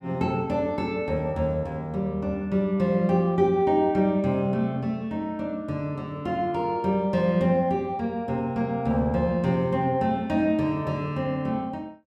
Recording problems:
none

